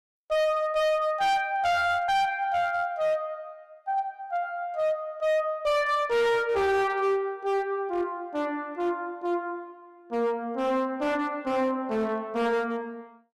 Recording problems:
distorted audio; hard clipping, signal-to-distortion ratio 7 dB

